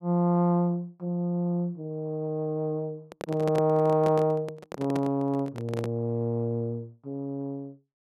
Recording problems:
handling noise; from 3 to 6 s; peak -3 dB vs average level

